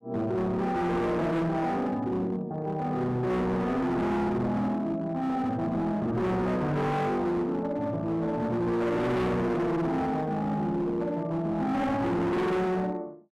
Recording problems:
distorted audio; hard clipping, signal-to-distortion ratio 7 dB

